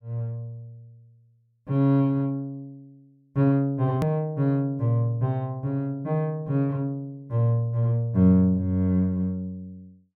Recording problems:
hard cut with a click; at 4 s

